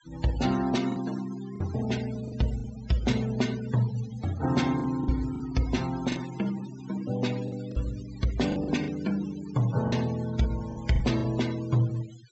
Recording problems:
treble cut off; nothing above 7.7 kHz
denoising artefacts; signal-to-artefact ratio 15 dB
packet loss; 6% of the sound replaced, filled with the last packet

